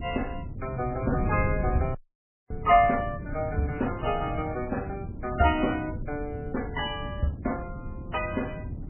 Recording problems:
lossy compression; MP3, log-spectral distance 4 dB, nothing above 2.5 kHz
wind noise; below 170 Hz, SNR 7 dB
dropout; at 2 s for 0.5 s

